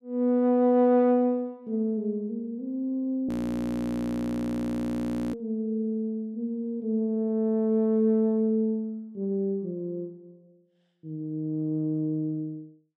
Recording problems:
audio freezing; at 3.5 s for 2 s

